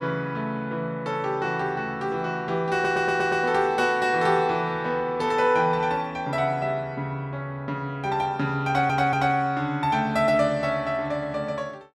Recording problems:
stutter; at 2.5 s and at 8.5 s

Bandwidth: 13.5 kHz